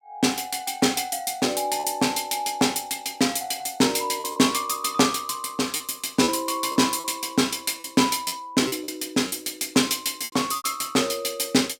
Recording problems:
lost packets; 5% of the sound replaced, filled with repeated pitch periods

